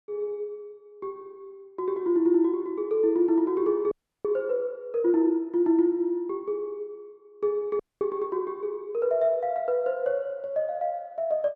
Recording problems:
frozen audio; at 4 s and at 8 s

